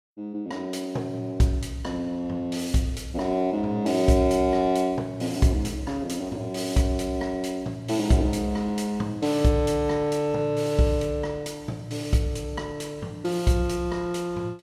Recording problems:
none

